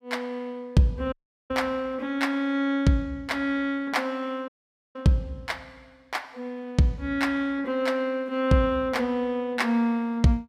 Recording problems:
dropout; at 1 s and at 4.5 s

